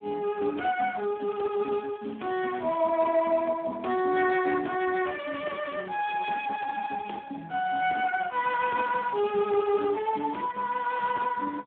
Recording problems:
phone line; 240 Hz to 3.3 kHz, Speex
crackle; from 1 to 3 s and from 9 to 11 s; loose cable, SNR 27 dB

